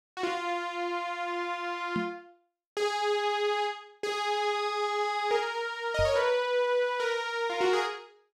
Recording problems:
microphone thump; at 2 s and at 6 s; peak -1 dB vs average level

